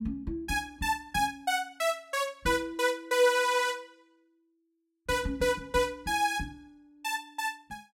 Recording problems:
none

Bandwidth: 16 kHz